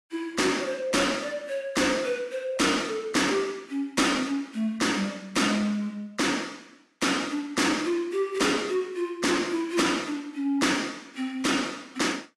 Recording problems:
lossy codec; AAC, log-spectral distance 3 dB, nothing above 11.3 kHz
distorted audio; soft clipping, signal-to-distortion ratio 10 dB

